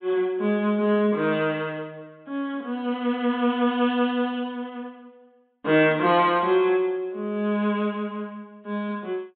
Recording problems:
low-pass filter; nothing above 4 kHz

